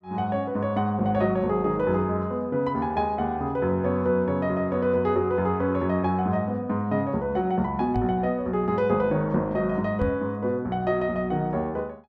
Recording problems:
knock on the microphone; at 8 s and at 10 s; peak 0 dB vs average level

